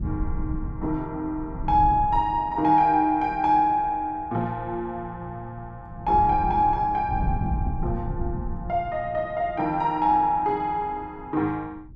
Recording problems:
wind noise; below 140 Hz, SNR 8 dB

